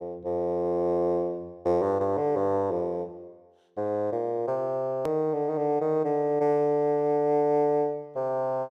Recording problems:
click at an edit; at 5 s

